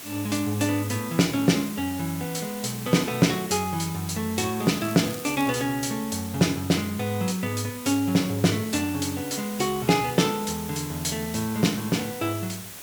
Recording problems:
hiss; slope -1 dB per octave, SNR 12 dB
crackle; at 4.5 s; loose cable, SNR 16 dB

